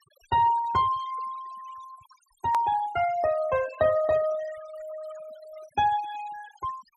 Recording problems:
denoising artefacts; signal-to-artefact ratio 18 dB
hard cut with a click; at 2.5 s

